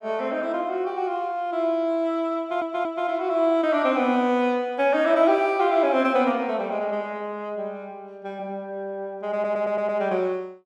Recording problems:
audio stuttering; at 2.5 s and at 9.5 s

